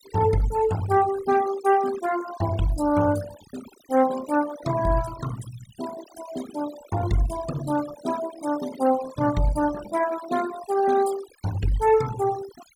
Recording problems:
denoising artefacts; signal-to-artefact ratio 14 dB

